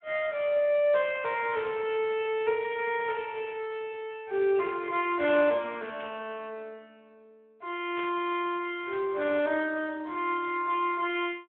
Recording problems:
phone line; 240 Hz to 3.2 kHz, Speex
burst of static; 4 times, first at 1.5 s; peak -9 dB vs average level

